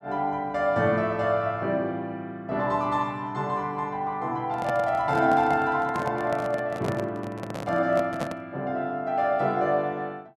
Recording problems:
handling noise; from 4.5 to 8.5 s; peak -1 dB vs average level

